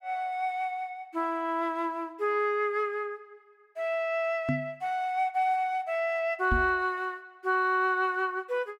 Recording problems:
microphone thump; at 4.5 s and at 6.5 s; peak +3 dB vs average level

